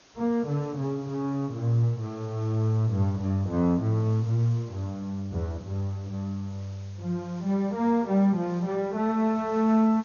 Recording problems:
codec artefacts; MP2, log-spectral distance 4 dB
background hiss; slope -2 dB per octave, SNR 27 dB

